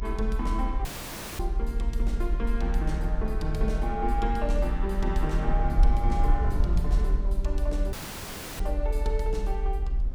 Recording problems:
hum; 60 Hz, harmonics up to 600 Hz, SNR 21 dB
rumble; below 54 Hz, strongest tone 38 Hz, SNR -4 dB
audio cutting out; at 1 s for 0.5 s and at 8 s for 0.5 s

